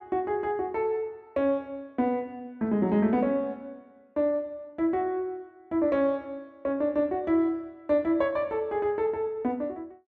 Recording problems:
none

